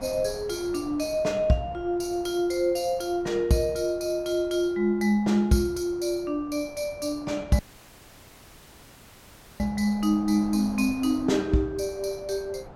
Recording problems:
wind noise; below 770 Hz, SNR 19 dB
dropout; at 7.5 s for 2 s

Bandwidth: 16.5 kHz